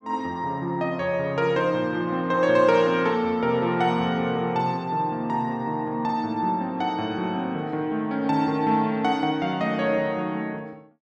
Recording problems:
none

